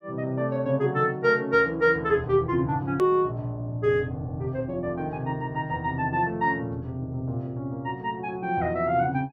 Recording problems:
hard cut with a click; at 3 s

